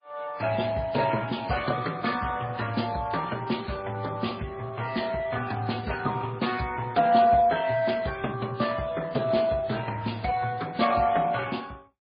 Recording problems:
lossy codec; Speex, then MP3, log-spectral distance 4 dB, nothing above 4.6 kHz

